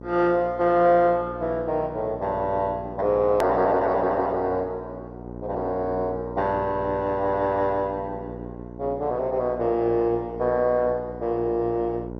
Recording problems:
lossy compression; MP2, log-spectral distance 2 dB, nothing above 14.6 kHz
hum; 60 Hz, harmonics up to 1.1 kHz, SNR 14 dB
click at an edit; at 3.5 s

